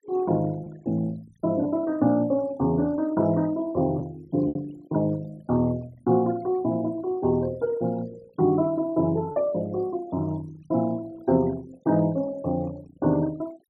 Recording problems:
denoising artefacts; signal-to-artefact ratio 23 dB
lost packets; 1.2% of the sound replaced, filled with repeated pitch periods

